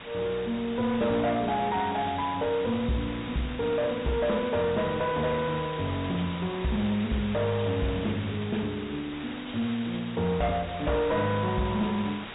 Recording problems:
treble missing; nothing above 3.8 kHz
distorted audio; soft clipping, signal-to-distortion ratio 10 dB
hiss; SNR 11 dB

